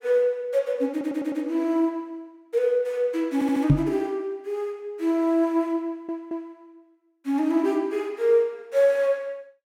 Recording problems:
stutter; at 1 s, at 3.5 s and at 6 s
microphone bump; at 3.5 s; peak +10 dB vs average level

